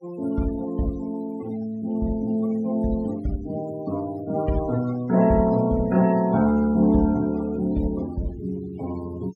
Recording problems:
denoising artefacts; signal-to-artefact ratio 21 dB

